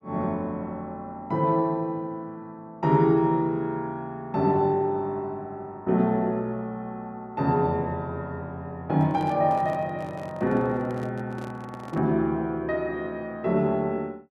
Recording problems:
microphone handling noise; from 9 to 12 s; peak -10 dB vs average level

